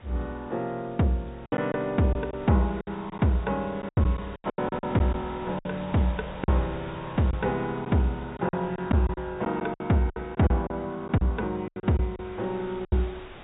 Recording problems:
treble cut off; nothing above 4 kHz
wind noise; below 2 kHz, SNR 19 dB
lost packets; 10% of the sound replaced, filled with silence

